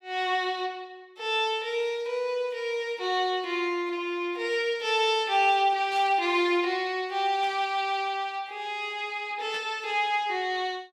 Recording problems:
burst of static; at 6 s, at 7.5 s and at 9.5 s; peak -11 dB vs average level

